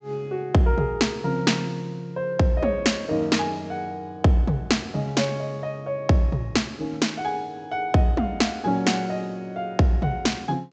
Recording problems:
treble missing; nothing above 8 kHz

